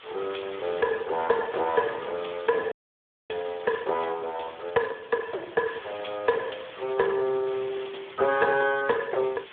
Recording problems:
telephone audio; 320 Hz to 2.6 kHz, Speex
background hiss; SNR 16 dB
frozen audio; at 2.5 s for 0.5 s

